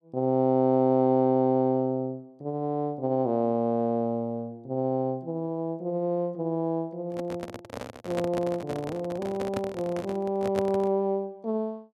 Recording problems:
microphone handling noise; from 7 to 11 s; peak -2 dB vs average level

